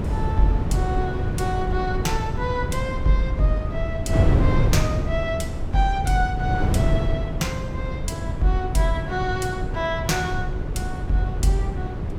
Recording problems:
wind noise; below 160 Hz, SNR 0 dB

